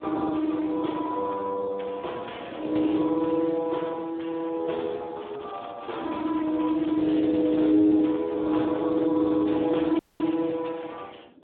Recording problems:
phone line; 220 Hz to 3.6 kHz, Speex
wind on the microphone; below 440 Hz, SNR 21 dB
crackling; from 5 to 8 s; loose cable, SNR 27 dB
dropout; at 10 s

